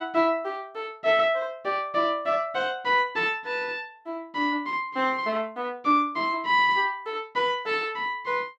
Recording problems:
none

